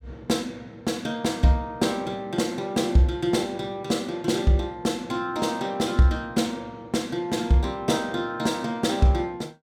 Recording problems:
none

